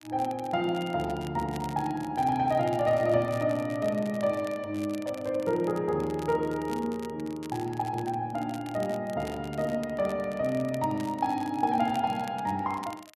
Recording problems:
crackling; vinyl, SNR 21 dB

